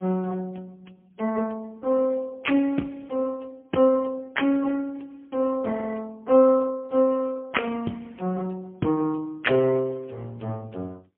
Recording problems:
telephone audio; 150 Hz to 3.3 kHz, AMR-NB, then MP3

